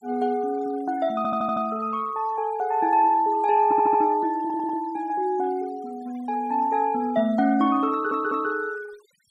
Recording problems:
denoising artefacts; signal-to-artefact ratio 25 dB
stutter; 4 times, first at 1 s

